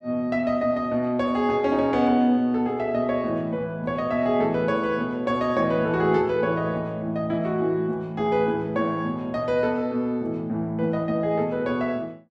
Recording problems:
none

